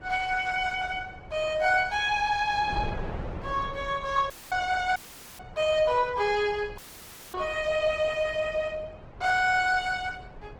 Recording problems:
lossy compression; Opus, log-spectral distance 3 dB
wind on the microphone; below 460 Hz, SNR 17 dB
audio cutting out; at 4.5 s, at 5 s and at 7 s for 0.5 s

